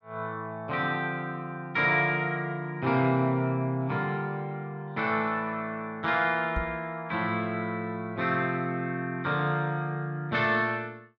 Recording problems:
microphone thump; at 6.5 s; peak -1 dB vs average level

